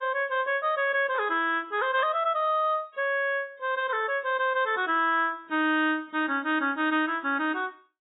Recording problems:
lossy codec; AAC, log-spectral distance 2 dB, nothing above 3.8 kHz

